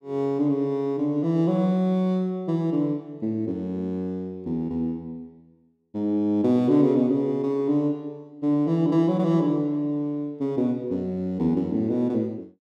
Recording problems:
none

